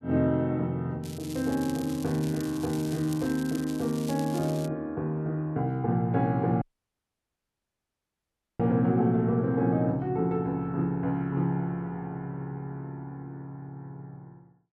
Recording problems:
crackling; from 1 to 3 s and from 3 to 4.5 s; loose cable, SNR 16 dB
dropout; at 6.5 s for 2 s

